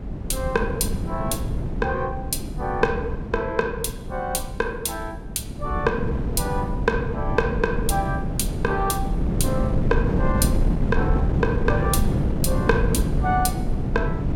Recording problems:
wind noise; below 200 Hz, SNR 0 dB

